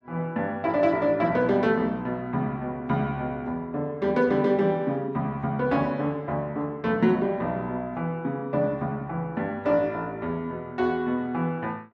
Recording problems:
none

